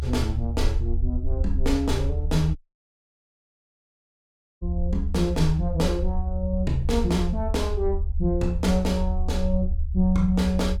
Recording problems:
low-frequency rumble; below 74 Hz, SNR 2 dB
audio cutting out; at 2.5 s for 2 s

